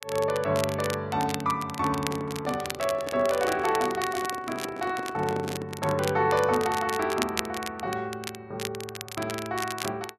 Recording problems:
crackling; vinyl, SNR 9 dB
handling noise; from 2 to 6 s; peak -3 dB vs average level

